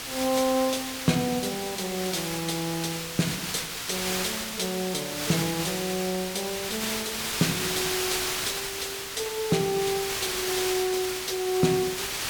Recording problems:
background hiss; slope 0 dB per octave, SNR 1 dB

